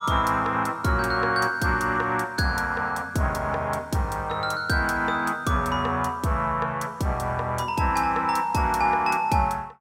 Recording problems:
none

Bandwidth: 16 kHz